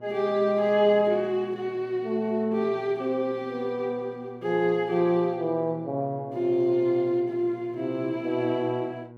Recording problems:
hum; 60 Hz, harmonics up to 1.1 kHz, SNR 20 dB

